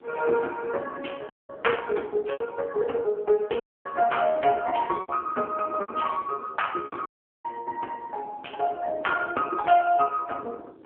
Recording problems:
phone line; 280 Hz to 3.2 kHz, AMR-NB
wind noise; below 450 Hz, SNR 18 dB
packet loss; 4% of the sound replaced, filled with repeated pitch periods
dropout; at 1.5 s, at 3.5 s and at 7 s

